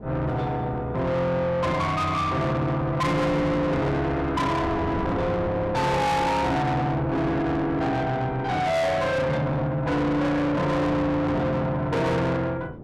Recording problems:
distorted audio; soft clipping, signal-to-distortion ratio 6 dB
wind noise; below 560 Hz, SNR 13 dB

